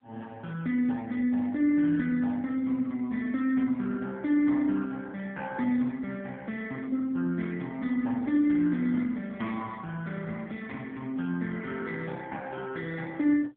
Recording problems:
telephone audio; 220 Hz to 3.5 kHz, AMR-NB

